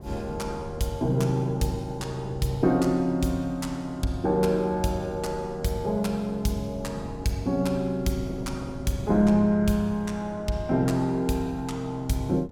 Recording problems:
wind noise; below 300 Hz, SNR 16 dB

